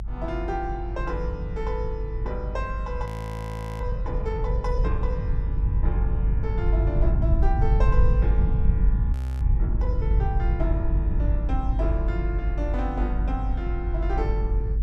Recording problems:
rumble; below 74 Hz, strongest tone 48 Hz, SNR -7 dB
frozen audio; at 3 s for 0.5 s and at 9 s

